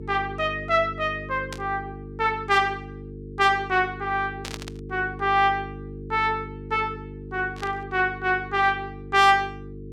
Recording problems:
hum; 50 Hz, harmonics up to 450 Hz, SNR 14 dB
static burst; at 1.5 s, at 4.5 s and at 7.5 s; peak -6 dB vs average level

